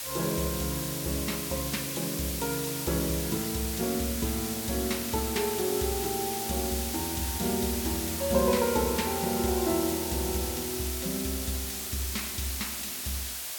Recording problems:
hiss; SNR 2 dB
crackle; from 3.5 to 5.5 s; loose cable, SNR 19 dB

